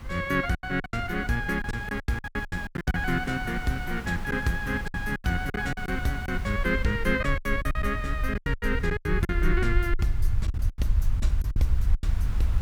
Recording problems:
background hiss; SNR 14 dB
rumble; below 68 Hz, SNR 3 dB
lost packets; 14% of the sound replaced, filled with silence

